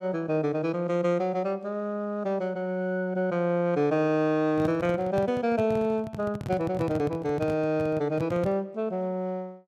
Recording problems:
microphone handling noise; from 4.5 to 8.5 s; peak -2 dB vs average level

